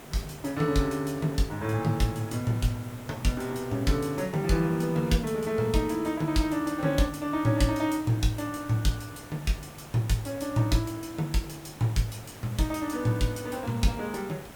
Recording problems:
hiss; slope -5 dB per octave, SNR 16 dB

